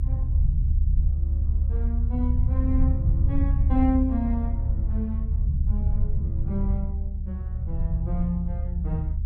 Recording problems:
low-frequency rumble; below 74 Hz, SNR -5 dB

